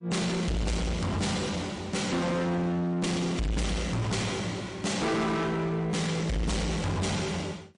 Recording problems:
codec artefacts; MP3, log-spectral distance 4 dB
distortion; soft clipping, signal-to-distortion ratio 6 dB

